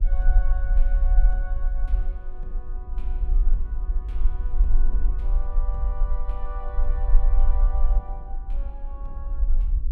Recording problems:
low-frequency rumble; below 40 Hz, strongest tone 18 Hz, SNR -16 dB
wind noise; below 330 Hz, SNR 10 dB

